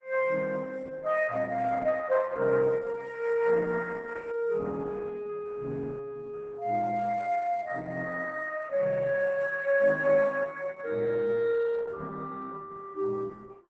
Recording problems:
codec artefacts; Opus, log-spectral distance 3 dB, nothing above 8 kHz

